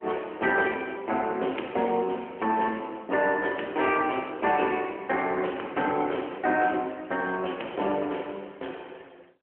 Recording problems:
phone line; 280 Hz to 3.1 kHz, AMR-NB

